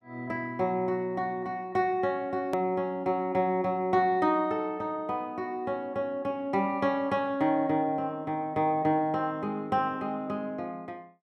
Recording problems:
edit click; at 2.5 s

